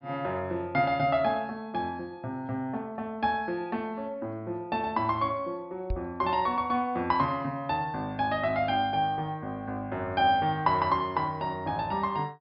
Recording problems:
treble missing; nothing above 5.3 kHz
microphone bump; at 6 s; peak +1 dB vs average level

